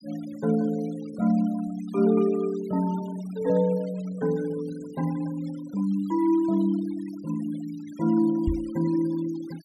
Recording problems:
denoising artefacts; signal-to-artefact ratio 23 dB
knock on the microphone; at 8.5 s; peak +2 dB vs average level

